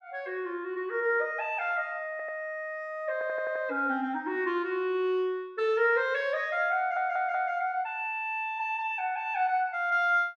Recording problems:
audio stuttering; at 2 s, at 3 s and at 7 s

